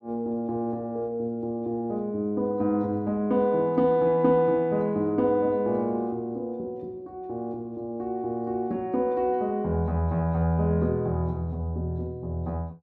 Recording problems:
none

